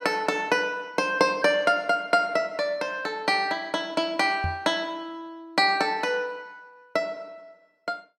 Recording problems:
microphone bump; at 4.5 s; peak -2 dB vs average level

